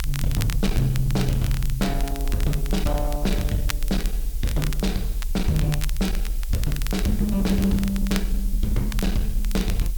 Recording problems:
distorted audio; hard clipping, uneven, signal-to-distortion ratio 11 dB
hiss; slope +3 dB per octave, SNR 15 dB
low-frequency rumble; below 46 Hz, SNR 3 dB
crackle; vinyl, SNR 12 dB

